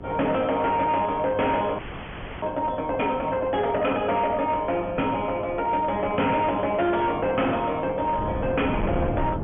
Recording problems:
treble missing; nothing above 3.3 kHz
distorted audio; hard clipping, signal-to-distortion ratio 11 dB
hum; 50 Hz, harmonics up to 1.4 kHz, SNR 18 dB
wind noise; below 390 Hz, SNR 12 dB
frozen audio; at 2 s for 0.5 s

